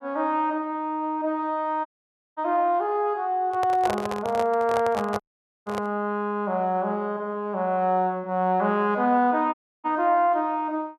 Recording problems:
audio cutting out; at 2 s for 0.5 s, at 5 s and at 9.5 s
handling noise; from 3.5 to 6 s; peak 0 dB vs average level

